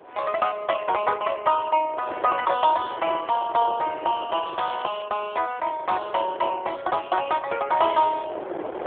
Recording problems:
phone line; 320 Hz to 3.5 kHz, AMR-NB
wind on the microphone; below 810 Hz, SNR 14 dB
crackle; at 4.5 s; loose cable, SNR 20 dB

